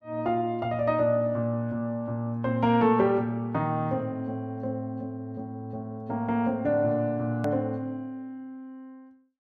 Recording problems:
edit click; at 7.5 s

